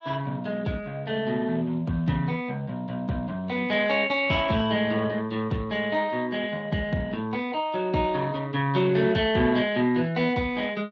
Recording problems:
lossy compression; Speex, log-spectral distance 3 dB

